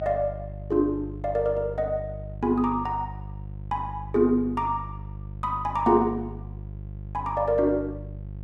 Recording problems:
hum; 50 Hz, harmonics up to 500 Hz, SNR 12 dB

